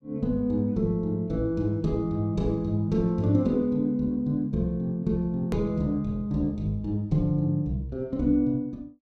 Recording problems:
click at an edit; at 5.5 s

